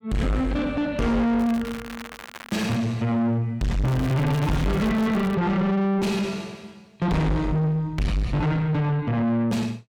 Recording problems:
distorted audio; soft clipping, signal-to-distortion ratio 6 dB
crackling; from 1.5 to 3 s and from 4 to 5.5 s; loose cable, SNR 15 dB

